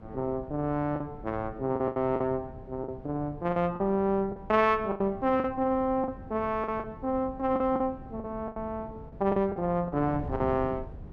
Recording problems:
wind on the microphone; below 240 Hz, SNR 16 dB
lost packets; 9% of the sound replaced, filled with the last packet

